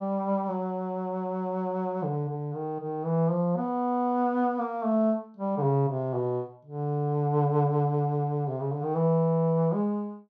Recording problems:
none

